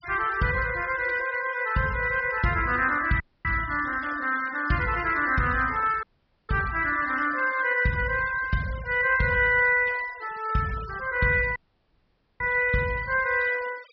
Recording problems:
low-pass filter; nothing above 5.5 kHz
denoising artefacts; signal-to-artefact ratio 20 dB
dropout; at 3 s, at 6 s and at 12 s for 1 s

